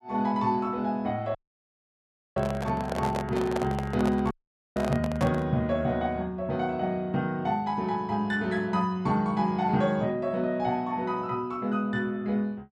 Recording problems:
dropout; at 1.5 s for 1 s and at 4.5 s
handling noise; from 2.5 to 5.5 s; peak 0 dB vs average level

